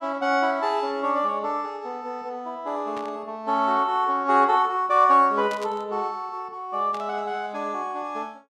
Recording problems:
static burst; at 3 s, at 5.5 s and at 7 s; peak -11 dB vs average level

